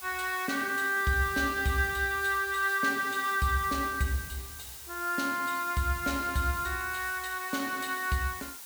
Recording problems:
background hiss; SNR 12 dB

